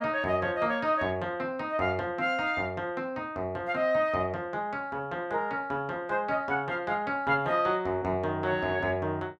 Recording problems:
none

